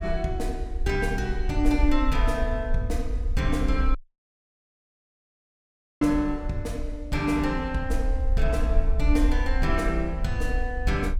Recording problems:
rumble; below 54 Hz, SNR 2 dB
dropout; at 4 s for 2 s

